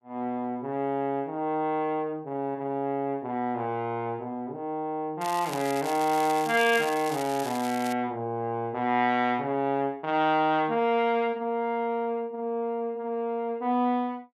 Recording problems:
crackle; from 5 to 8 s; loose cable, SNR 12 dB

